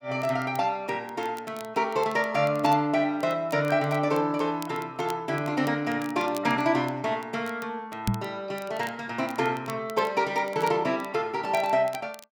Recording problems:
crackling; vinyl, SNR 21 dB
microphone bump; at 8 s; peak +5 dB vs average level

